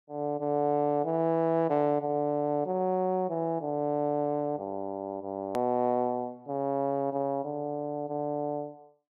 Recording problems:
hard cut with a click; at 5.5 s

